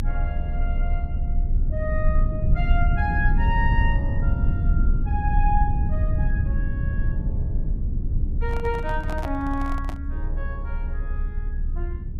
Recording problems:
rumble; below 76 Hz, strongest tone 28 Hz, SNR -6 dB
microphone handling noise; from 8.5 to 10 s; peak +3 dB vs average level

